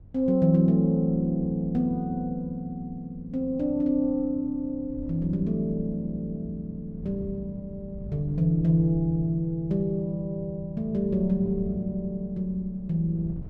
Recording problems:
wind on the microphone; below 130 Hz, SNR 16 dB

